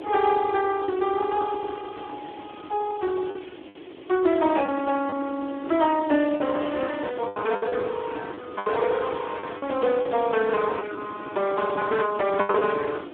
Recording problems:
telephone audio; 260 Hz to 3 kHz, Speex
hiss; SNR 24 dB
wind noise; below 450 Hz, SNR 13 dB
lost packets; 5% of the sound replaced, filled with the last packet

